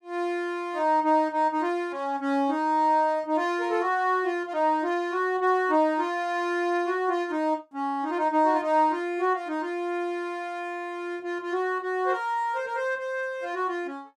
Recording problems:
none

